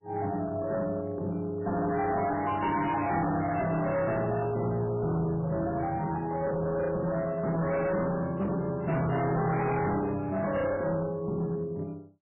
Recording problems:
codec artefacts; MP3, log-spectral distance 3 dB, nothing above 2.4 kHz
distortion; hard clipping, signal-to-distortion ratio 7 dB

